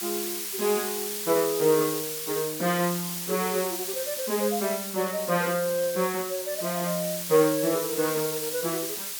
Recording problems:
hiss; slope +3 dB per octave, SNR 4 dB

